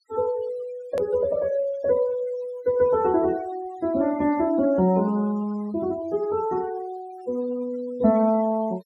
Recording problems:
denoising artefacts; signal-to-artefact ratio 20 dB
hard cut with a click; at 1 s

